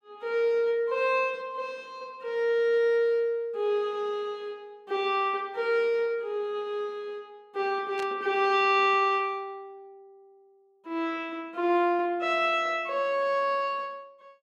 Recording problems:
static burst; at 8 s; peak -10 dB vs average level

